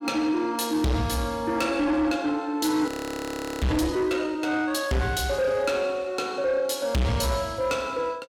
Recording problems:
distortion; soft clipping, signal-to-distortion ratio 7 dB
frozen audio; at 3 s for 0.5 s

